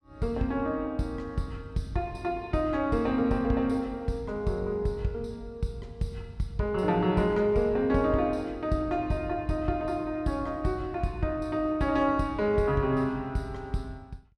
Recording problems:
none

